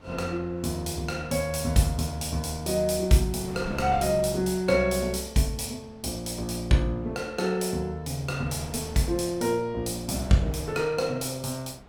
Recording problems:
wind on the microphone; below 680 Hz, SNR 19 dB

